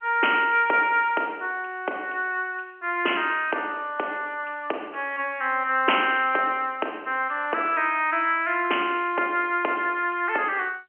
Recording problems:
phone line; 300 Hz to 3.1 kHz, G.711

